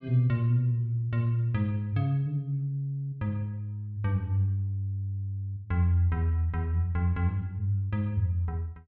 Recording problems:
none

